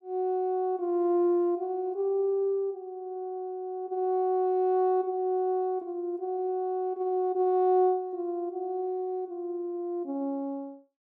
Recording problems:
none

